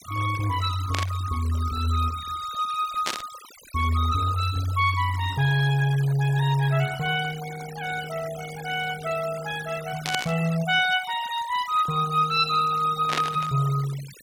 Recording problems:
denoising artefacts; signal-to-artefact ratio 16 dB
static burst; 4 times, first at 1 s; peak +2 dB vs average level

